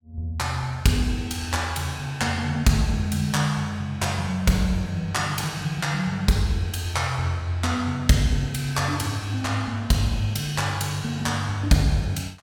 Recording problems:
none

